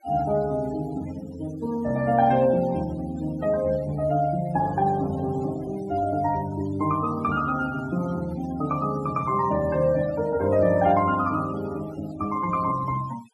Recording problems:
denoising artefacts; signal-to-artefact ratio 20 dB

